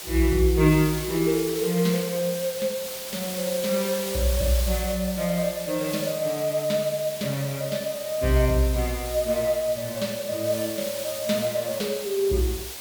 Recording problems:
hiss; slope 0 dB per octave, SNR 8 dB

